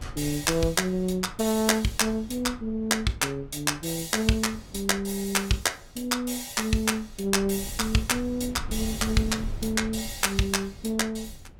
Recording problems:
low-frequency rumble; below 110 Hz, SNR 16 dB

